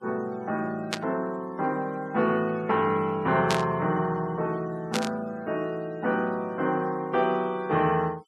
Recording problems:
noise reduction artefacts; signal-to-artefact ratio 26 dB
burst of static; at 1 s, at 3.5 s and at 5 s; peak +3 dB vs average level

